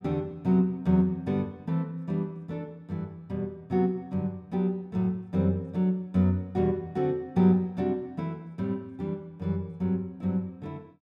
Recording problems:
none

